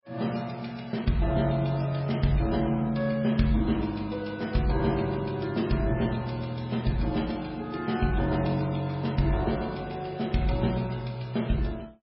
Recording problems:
lossy codec; MP3, log-spectral distance 3 dB, nothing above 5.3 kHz

